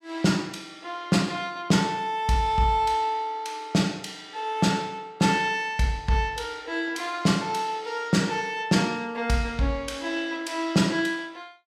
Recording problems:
none

